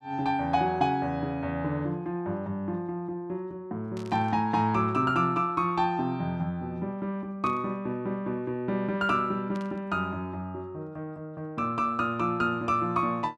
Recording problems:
burst of static; at 4 s, at 7.5 s and at 9.5 s; peak -15 dB vs average level

